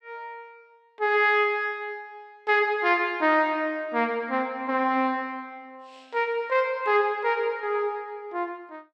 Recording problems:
none

